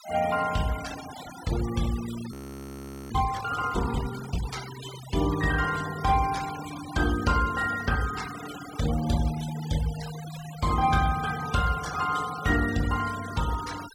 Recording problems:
denoising artefacts; signal-to-artefact ratio 13 dB
audio freezing; at 2.5 s for 1 s

